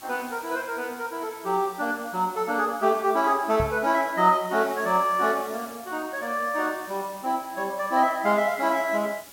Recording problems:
background hiss; slope -1 dB per octave, SNR 19 dB
microphone thump; at 3.5 s; peak -1 dB vs average level

